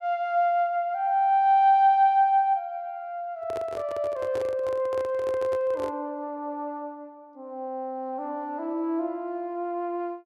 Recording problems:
microphone handling noise; from 3.5 to 6 s; peak -7 dB vs average level

